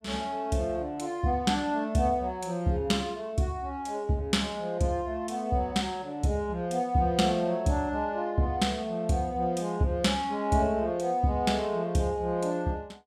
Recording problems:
none

